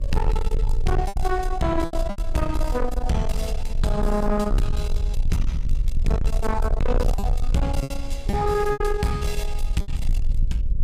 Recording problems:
distortion; soft clipping, signal-to-distortion ratio 7 dB
hum; 60 Hz, harmonics up to 600 Hz, SNR 23 dB
low-frequency rumble; below 50 Hz, strongest tone 22 Hz, SNR 2 dB
lost packets; 5% of the sound replaced, filled with repeated pitch periods

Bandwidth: 15.5 kHz